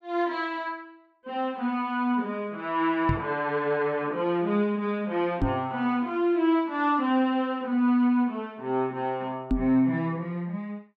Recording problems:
knock on the microphone; at 3 s, at 5.5 s and at 9.5 s; peak +4 dB vs average level

